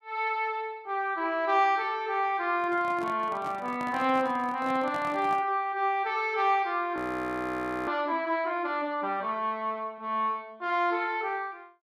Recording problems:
microphone handling noise; from 2.5 to 5.5 s; peak -7 dB vs average level
frozen audio; at 7 s for 1 s

